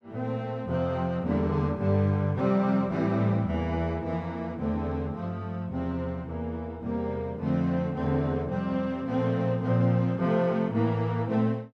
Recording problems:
none

